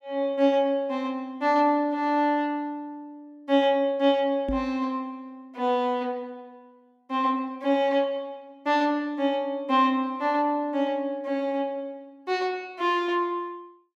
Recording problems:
microphone bump; at 4.5 s; peak 0 dB vs average level

